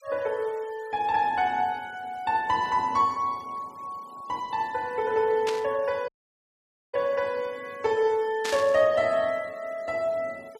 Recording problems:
denoising artefacts; signal-to-artefact ratio 27 dB
static burst; at 5.5 s and at 8.5 s; peak -2 dB vs average level
dropout; at 6 s for 1 s

